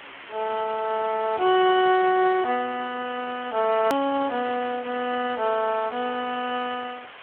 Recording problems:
phone line; 260 Hz to 3.6 kHz, Speex
hiss; SNR 17 dB
hard cut with a click; at 4 s

